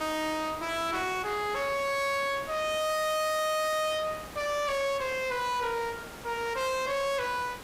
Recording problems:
distortion; hard clipping, signal-to-distortion ratio 6 dB
background hiss; slope -4 dB per octave, SNR 14 dB

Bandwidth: 15.5 kHz